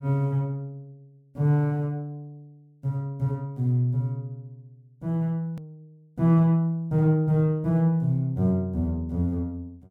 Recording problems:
click at an edit; at 5.5 s

